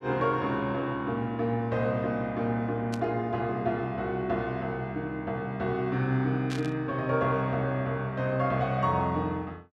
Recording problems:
static burst; at 3 s and at 6.5 s; peak -6 dB vs average level

